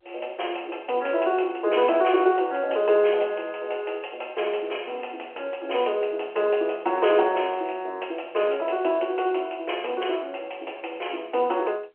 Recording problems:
telephone audio; 340 Hz to 3.1 kHz, G.711

